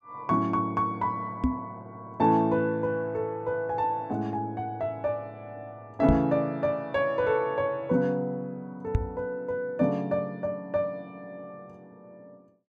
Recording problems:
microphone thump; at 1.5 s, at 6 s and at 9 s; peak +6 dB vs average level

